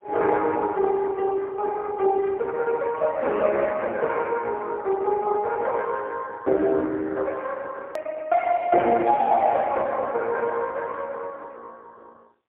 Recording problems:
phone line; 300 Hz to 3.4 kHz, AMR-NB, then MP3
click at an edit; at 8 s

